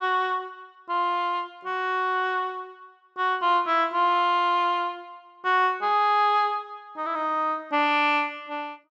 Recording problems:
none

